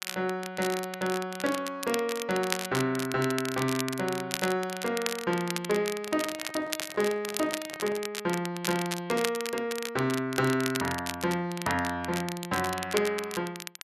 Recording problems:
crackle; vinyl, SNR 7 dB
handling noise; from 6 to 8 s; peak -10 dB vs average level

